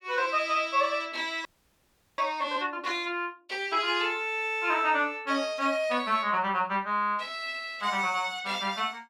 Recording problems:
audio freezing; at 1.5 s for 0.5 s

